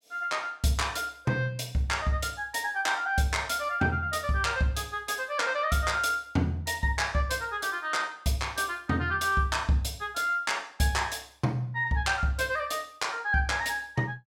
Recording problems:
none

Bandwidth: 18 kHz